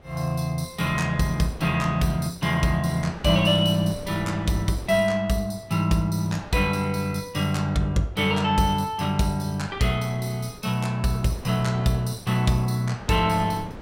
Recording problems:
wind on the microphone; below 530 Hz, SNR 19 dB

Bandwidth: 16 kHz